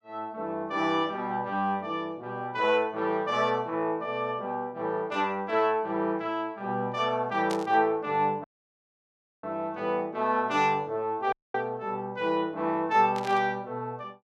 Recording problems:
static burst; at 7.5 s and at 13 s; peak -6 dB vs average level
audio cutting out; at 8.5 s for 1 s and at 11 s

